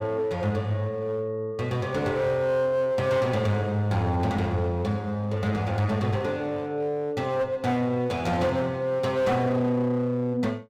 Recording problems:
distortion; hard clipping, uneven, signal-to-distortion ratio 10 dB

